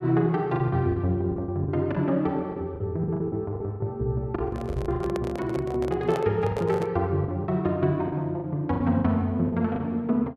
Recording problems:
packet loss; 11% of the sound replaced, filled with the last packet
microphone handling noise; from 4.5 to 7 s; peak -2 dB vs average level

